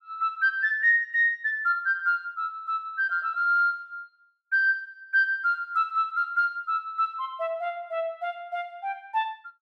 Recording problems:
none

